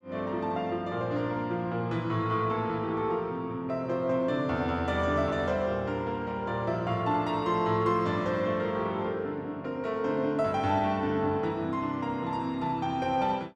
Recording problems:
none

